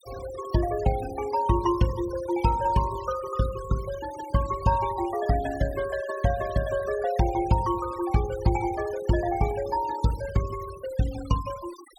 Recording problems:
denoising artefacts; signal-to-artefact ratio 16 dB

